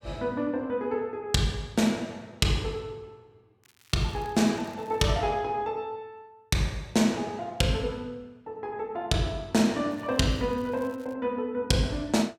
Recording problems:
crackling; from 3.5 to 5 s and from 10 to 11 s; loose cable, SNR 29 dB

